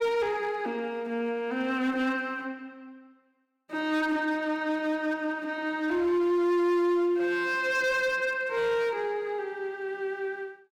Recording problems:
distortion; hard clipping, signal-to-distortion ratio 11 dB

